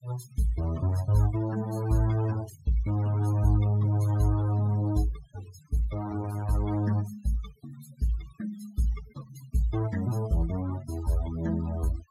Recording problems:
noise reduction artefacts; signal-to-artefact ratio 18 dB

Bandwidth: 16.5 kHz